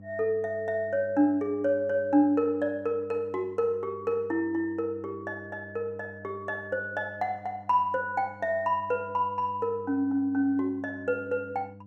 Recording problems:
mains hum; 50 Hz, harmonics up to 800 Hz, SNR 20 dB

